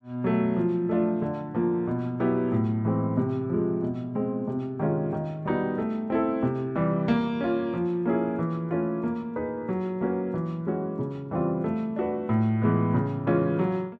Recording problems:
none

